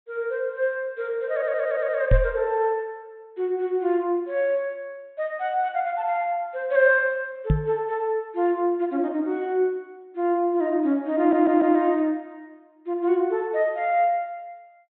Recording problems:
low-pass filter; nothing above 4 kHz
stutter; at 1.5 s and at 11 s
microphone bump; at 2 s and at 7.5 s; peak +7 dB vs average level

